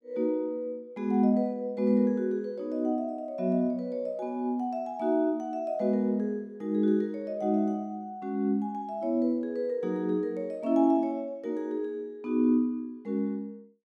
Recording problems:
none

